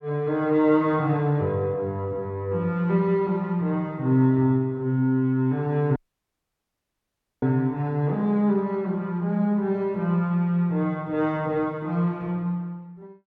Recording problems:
audio cutting out; at 6 s for 1.5 s

